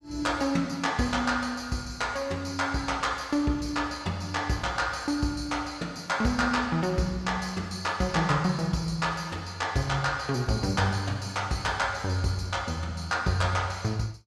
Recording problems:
none

